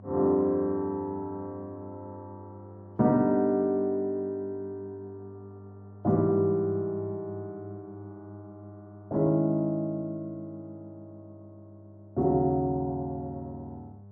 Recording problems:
hum; 50 Hz, harmonics up to 800 Hz, SNR 21 dB

